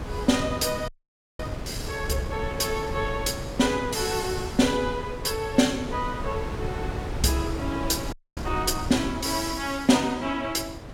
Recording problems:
wind noise; below 400 Hz, SNR 8 dB
audio freezing; at 1 s for 0.5 s and at 8 s

